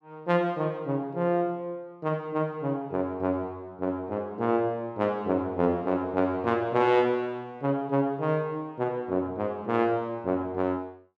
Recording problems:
none

